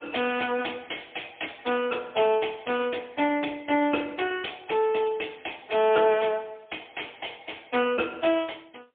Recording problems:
phone line; 220 Hz to 3.4 kHz, AMR-NB, then MP3

